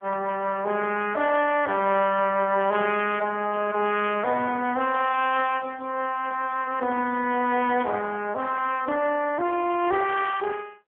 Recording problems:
telephone audio; 220 Hz to 3.3 kHz, AMR-NB

